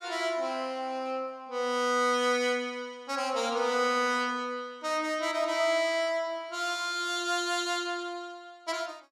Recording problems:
none

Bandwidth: 15 kHz